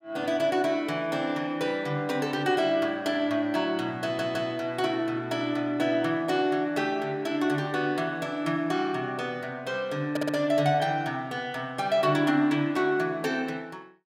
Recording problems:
audio stuttering; at 4 s and at 10 s

